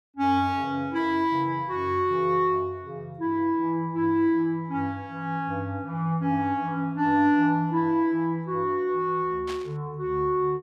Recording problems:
static burst; at 9.5 s; peak -9 dB vs average level

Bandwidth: 14 kHz